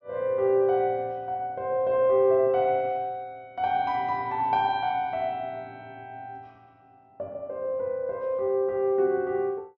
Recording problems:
treble missing; nothing above 8 kHz

